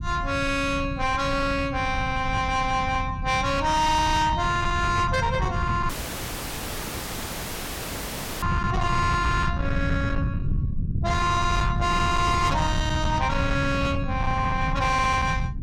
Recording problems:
distorted audio; soft clipping, signal-to-distortion ratio 12 dB
rumble; below 160 Hz, SNR 5 dB
audio cutting out; at 6 s for 2.5 s

